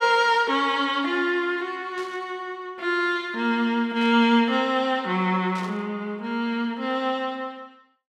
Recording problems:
burst of static; at 2 s, at 4 s and at 5.5 s; peak -12 dB vs average level

